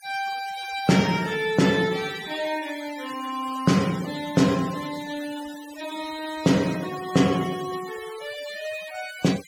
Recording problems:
denoising artefacts; signal-to-artefact ratio 15 dB

